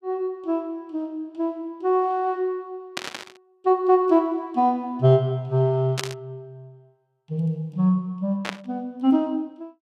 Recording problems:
burst of static; at 3 s, at 6 s and at 8.5 s; peak 0 dB vs average level

